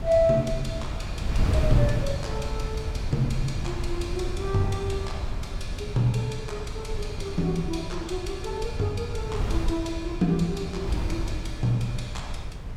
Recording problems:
wind noise; below 110 Hz, SNR 3 dB

